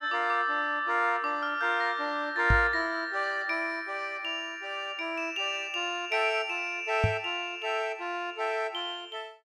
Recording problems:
microphone bump; at 2.5 s and at 7 s; peak +6 dB vs average level

